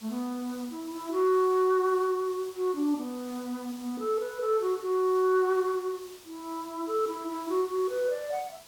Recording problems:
hiss; SNR 20 dB

